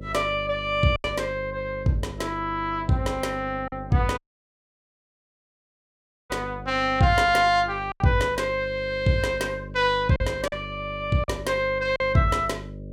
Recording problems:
hum; 50 Hz, harmonics up to 600 Hz, SNR 14 dB
lost packets; 3% of the sound replaced, filled with silence
dropout; at 4 s for 2 s

